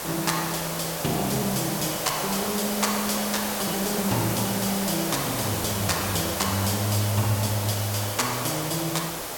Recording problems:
hiss; SNR 2 dB

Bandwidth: 17 kHz